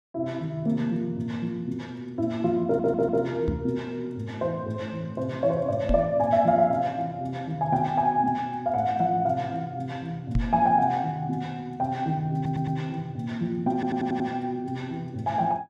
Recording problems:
audio stuttering; at 2.5 s, at 12 s and at 14 s
microphone bump; at 3.5 s, at 6 s and at 10 s; peak +4 dB vs average level

